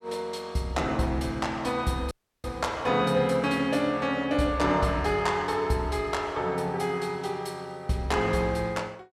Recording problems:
dropout; at 2 s

